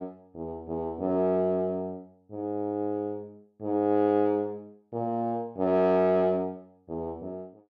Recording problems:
none

